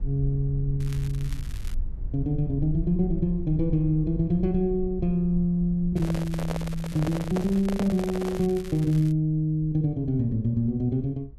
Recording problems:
rumble; below 58 Hz, SNR 12 dB
crackling; at 1 s and from 6 to 9 s; loose cable, SNR 21 dB
handling noise; from 6 to 8.5 s; peak -2 dB vs average level

